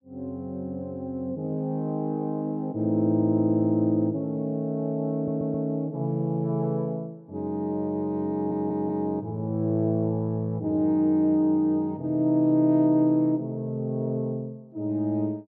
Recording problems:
stutter; at 5 s and at 8.5 s

